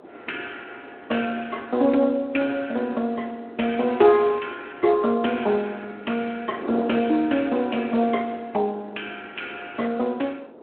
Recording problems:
telephone audio; 240 Hz to 3.3 kHz, Speex
wind on the microphone; below 620 Hz, SNR 17 dB

